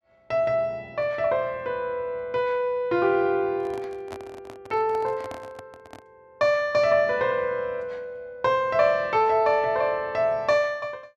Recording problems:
handling noise; from 3.5 to 6 s; peak -10 dB vs average level

